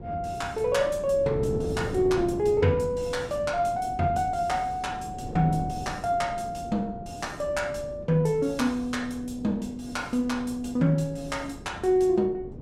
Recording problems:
wind on the microphone; below 340 Hz, SNR 12 dB

